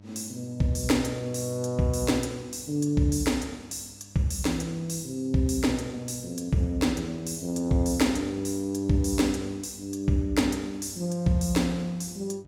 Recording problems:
electrical hum; 50 Hz, harmonics up to 900 Hz, SNR 24 dB

